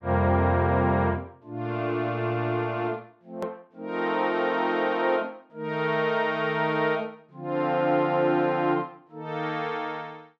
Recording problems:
click at an edit; at 3.5 s

